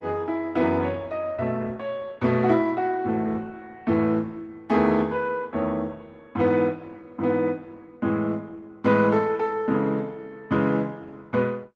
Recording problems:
codec artefacts; Opus, log-spectral distance 2 dB

